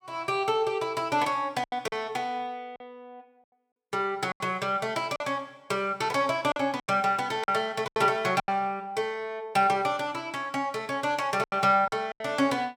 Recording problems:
lost packets; 7% of the sound replaced, filled with silence

